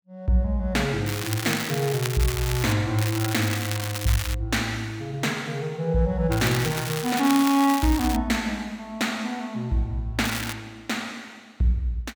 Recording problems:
crackle; 4 times, first at 1 s; loose cable, SNR 7 dB

